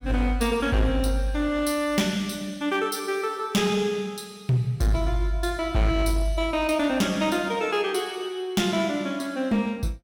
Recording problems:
distorted audio; hard clipping, uneven, signal-to-distortion ratio 12 dB

